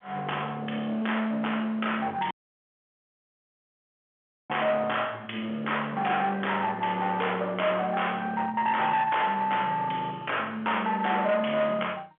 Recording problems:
telephone audio; 190 Hz to 3.4 kHz, G.711
distortion; hard clipping, signal-to-distortion ratio 9 dB
audio cutting out; at 2.5 s for 2 s

